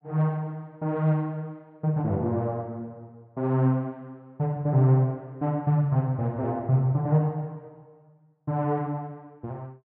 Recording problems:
none

